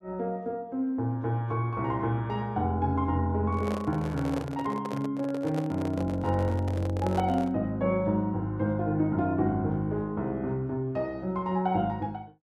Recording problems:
microphone handling noise; from 3.5 to 7.5 s; peak -2 dB vs average level

